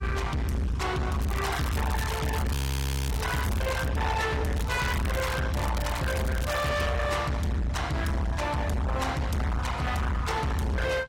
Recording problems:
codec artefacts; AAC, log-spectral distance 3 dB, nothing above 16.5 kHz
distorted audio; hard clipping, uneven, signal-to-distortion ratio 5 dB
crackle; from 1 to 4 s, at 4.5 s and from 5.5 to 6.5 s; loose cable, SNR 9 dB
frozen audio; at 2.5 s for 0.5 s

